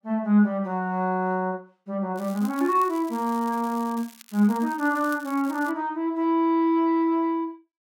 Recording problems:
crackling; from 2 to 5.5 s; loose cable, SNR 22 dB

